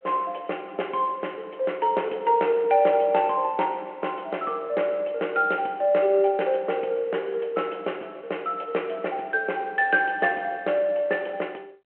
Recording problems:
phone line; 280 Hz to 3.2 kHz, G.726

